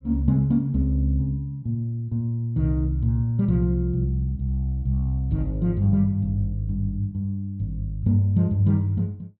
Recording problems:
none

